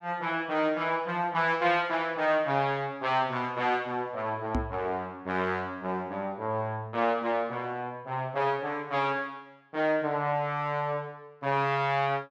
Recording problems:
microphone bump; at 4.5 s; peak +3 dB vs average level

